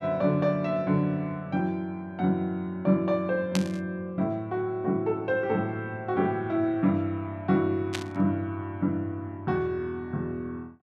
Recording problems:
burst of static; at 3.5 s and at 8 s; peak +1 dB vs average level

